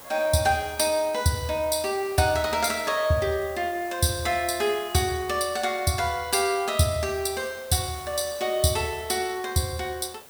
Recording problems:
hiss; SNR 18 dB

